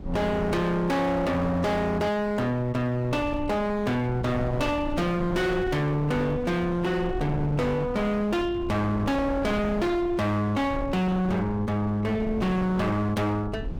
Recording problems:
distortion; hard clipping, signal-to-distortion ratio 8 dB
low-frequency rumble; below 210 Hz, SNR 12 dB

